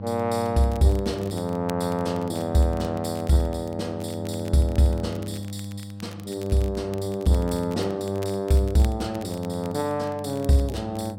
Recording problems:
hum; 50 Hz, harmonics up to 800 Hz, SNR 11 dB
crackling; vinyl, SNR 23 dB

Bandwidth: 16 kHz